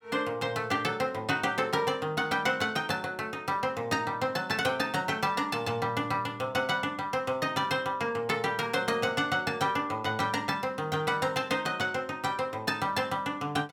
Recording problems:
none

